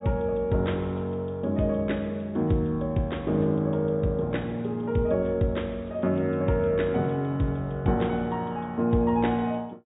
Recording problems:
treble cut off; nothing above 4 kHz

